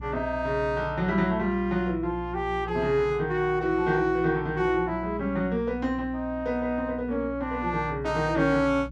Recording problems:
hum; 60 Hz, harmonics up to 300 Hz, SNR 15 dB

